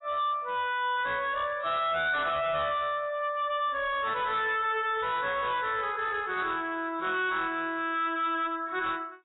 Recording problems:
lossy codec; AAC, log-spectral distance 3 dB, nothing above 3.8 kHz
distortion; hard clipping, signal-to-distortion ratio 10 dB

